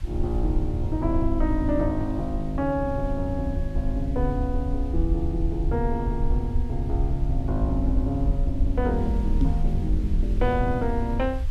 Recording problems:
hiss; SNR 25 dB
rumble; below 66 Hz, SNR 1 dB
knock on the microphone; at 9.5 s; peak +7 dB vs average level

